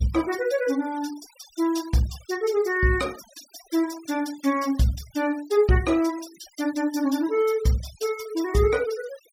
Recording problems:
noise reduction artefacts; signal-to-artefact ratio 19 dB

